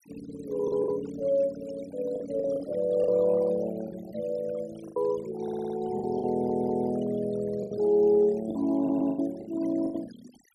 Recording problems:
denoising artefacts; signal-to-artefact ratio 19 dB
lost packets; 8% of the sound replaced, filled with the last packet
audio stuttering; at 5.5 s, at 6.5 s and at 9 s

